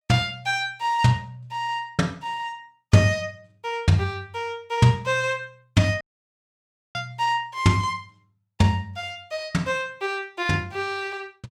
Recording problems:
dropout; at 6 s for 1 s

